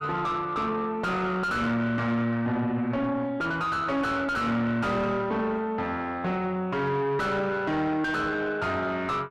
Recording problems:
distorted audio; soft clipping, signal-to-distortion ratio 6 dB

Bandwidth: 13 kHz